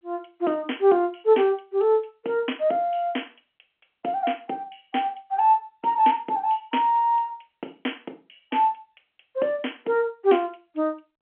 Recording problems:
telephone audio; 240 Hz to 3.3 kHz, G.711

